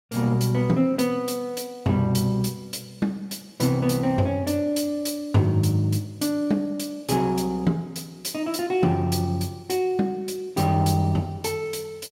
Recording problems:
none

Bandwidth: 16 kHz